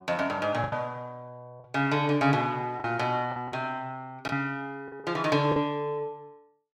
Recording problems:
packet loss; 6% of the sound replaced, filled with the last packet

